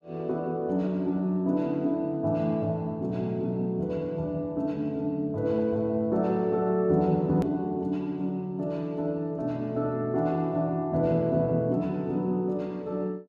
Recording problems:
click at an edit; at 7.5 s

